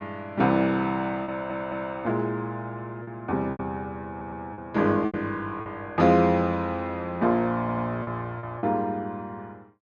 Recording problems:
packet loss; 5% of the sound replaced, filled with repeated pitch periods
audio stuttering; at 1.5 s, at 4 s and at 7.5 s

